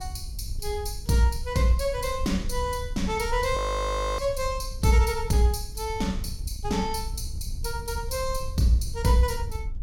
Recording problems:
wind noise; below 72 Hz, SNR 9 dB
frozen audio; at 3.5 s for 0.5 s

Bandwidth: 17.5 kHz